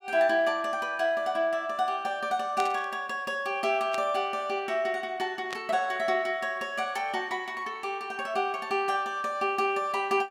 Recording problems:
static burst; at 2.5 s, at 4 s and at 5.5 s; peak -4 dB vs average level

